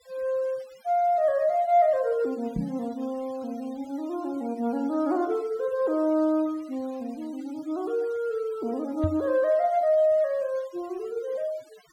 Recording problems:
denoising artefacts; signal-to-artefact ratio 26 dB
microphone thump; at 2.5 s and at 9 s; peak +2 dB vs average level

